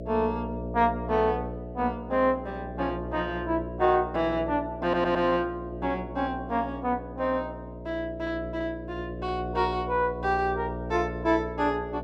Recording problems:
hum; 60 Hz, harmonics up to 660 Hz, SNR 9 dB
audio stuttering; at 5 s

